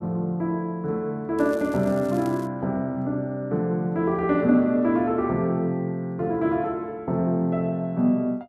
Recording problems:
crackle; from 1.5 to 2.5 s; loose cable, SNR 25 dB

